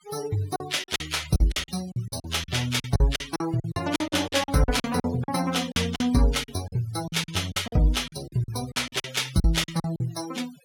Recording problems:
denoising artefacts; signal-to-artefact ratio 15 dB
lost packets; 16% of the sound replaced, filled with silence

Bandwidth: 17.5 kHz